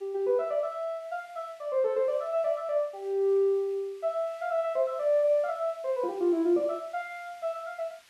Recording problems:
hiss; SNR 29 dB

